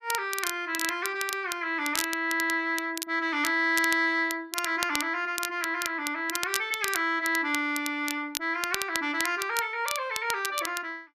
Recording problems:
crackling; vinyl, SNR 7 dB

